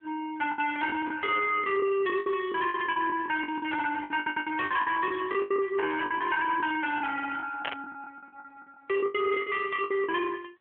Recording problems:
phone line; 340 Hz to 3.3 kHz, AMR-NB
distortion; hard clipping, signal-to-distortion ratio 8 dB
packet loss; 15% of the sound replaced, filled with the last packet
audio stuttering; at 4 s
burst of static; at 7.5 s; peak -1 dB vs average level

